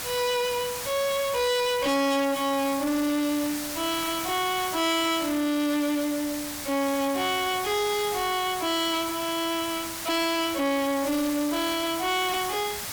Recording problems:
distorted audio; soft clipping, signal-to-distortion ratio 7 dB
hiss; slope 0 dB per octave, SNR 7 dB

